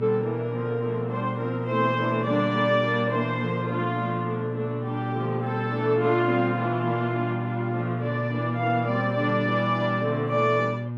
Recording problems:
hum; 60 Hz, harmonics up to 840 Hz, SNR 5 dB

